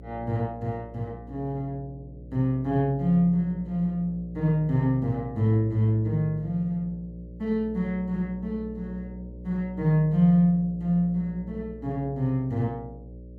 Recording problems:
hum; 60 Hz, harmonics up to 600 Hz, SNR 16 dB

